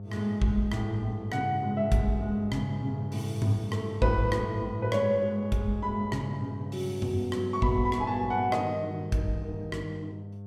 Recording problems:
mains hum; 50 Hz, harmonics up to 700 Hz, SNR 10 dB

